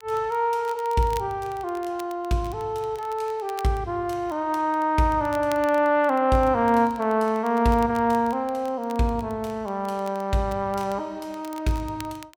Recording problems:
crackling; vinyl, SNR 24 dB

